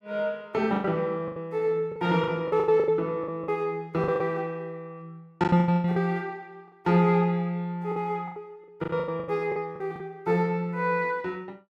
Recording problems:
packet loss; 12% of the sound replaced, filled with the last packet

